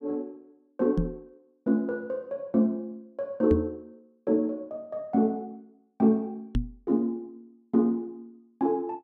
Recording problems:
microphone bump; at 1 s, at 3.5 s and at 6.5 s; peak +4 dB vs average level

